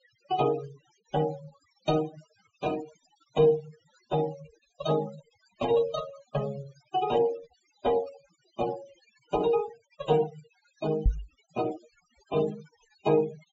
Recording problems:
treble missing; nothing above 8 kHz
denoising artefacts; signal-to-artefact ratio 16 dB
microphone bump; at 11 s; peak +7 dB vs average level

